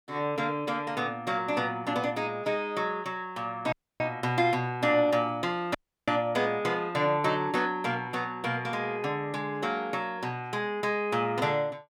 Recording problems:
audio cutting out; at 3.5 s and at 6 s

